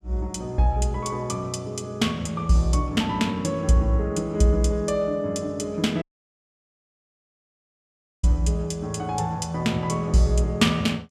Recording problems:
audio cutting out; at 6 s for 2 s

